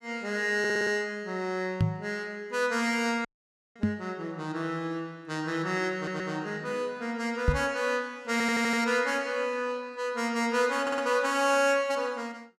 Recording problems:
stutter; 4 times, first at 0.5 s
microphone thump; at 2 s, at 4 s and at 7.5 s; peak +7 dB vs average level
dropout; at 3.5 s for 0.5 s

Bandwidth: 14.5 kHz